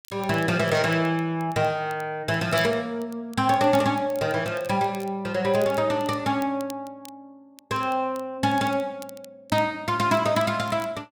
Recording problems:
crackle; vinyl, SNR 24 dB

